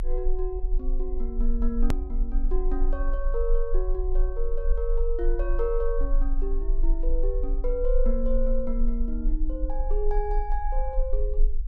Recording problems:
low-frequency rumble; below 34 Hz, strongest tone 24 Hz, SNR -3 dB
hard cut with a click; at 2 s

